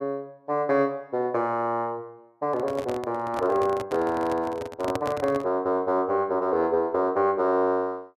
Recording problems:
handling noise; from 2.5 to 5.5 s; peak -1 dB vs average level

